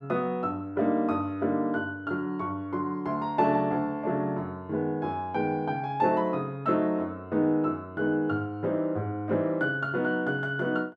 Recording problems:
none

